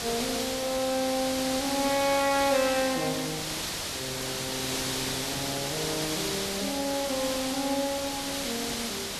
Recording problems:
background hiss; slope -1 dB per octave, SNR 1 dB

